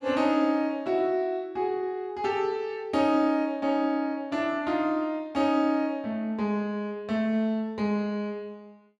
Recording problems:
none

